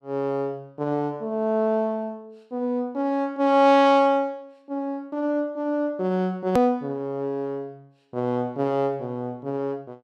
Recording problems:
hard cut with a click; at 6.5 s

